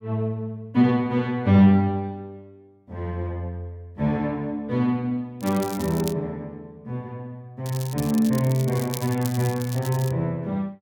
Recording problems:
crackling; at 5.5 s and from 7.5 to 10 s; loose cable, SNR 14 dB

